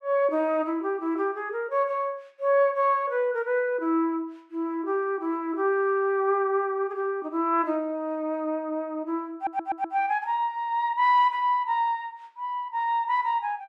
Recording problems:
stutter; at 9.5 s

